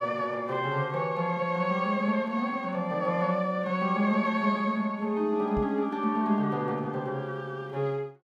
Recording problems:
microphone bump; at 5.5 s; peak -3 dB vs average level

